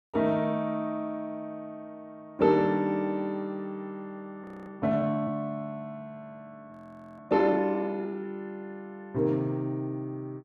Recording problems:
frozen audio; at 4.5 s and at 6.5 s

